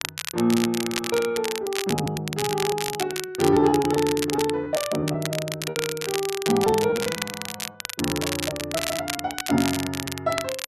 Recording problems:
crackling; vinyl, SNR 5 dB
packet loss; 16% of the sound replaced, filled with repeated pitch periods

